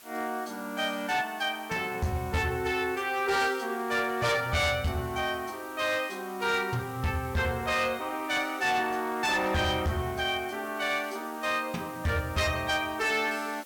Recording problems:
distortion; hard clipping, signal-to-distortion ratio 11 dB
background hiss; slope 0 dB per octave, SNR 20 dB

